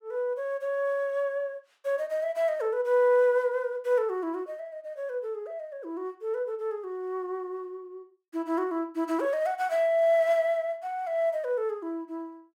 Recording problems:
none

